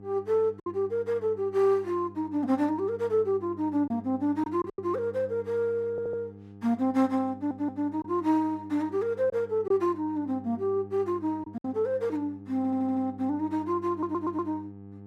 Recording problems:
hum; 50 Hz, harmonics up to 800 Hz, SNR 18 dB
packet loss; 3% of the sound replaced, filled with silence
stutter; 4 times, first at 6 s

